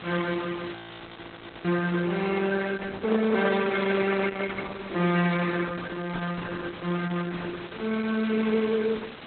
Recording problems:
lossy compression; Opus, log-spectral distance 17 dB, nothing above 3.9 kHz
background hiss; SNR 15 dB
audio freezing; at 1 s for 1 s
microphone handling noise; from 3 to 4.5 s; peak -3 dB vs average level

